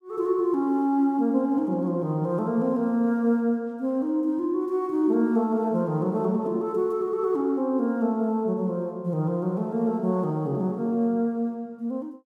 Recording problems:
none

